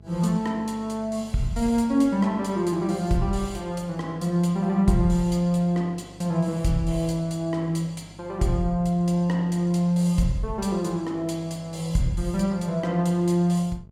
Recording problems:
hum; 50 Hz, harmonics up to 650 Hz, SNR 24 dB

